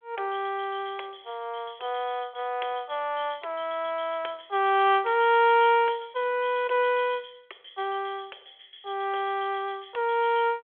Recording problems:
telephone audio; 340 Hz to 3.4 kHz, G.726

